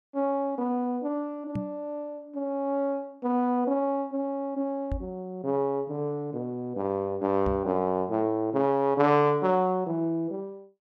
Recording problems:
microphone thump; at 1.5 s, at 5 s and at 7.5 s; peak -1 dB vs average level

